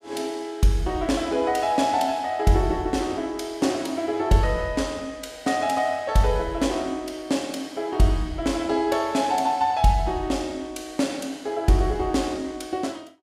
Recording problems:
none

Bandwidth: 15.5 kHz